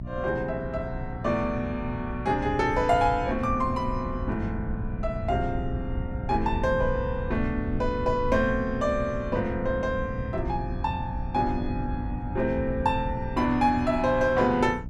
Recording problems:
hum; 60 Hz, harmonics up to 720 Hz, SNR 12 dB
rumble; below 100 Hz, SNR 9 dB

